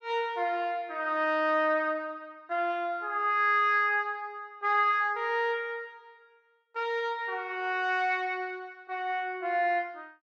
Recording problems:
none

